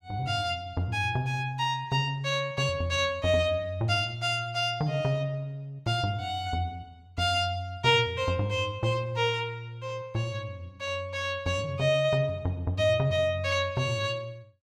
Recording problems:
none

